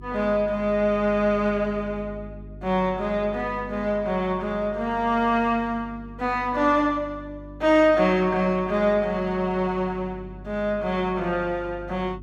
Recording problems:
mains hum; 50 Hz, harmonics up to 400 Hz, SNR 18 dB

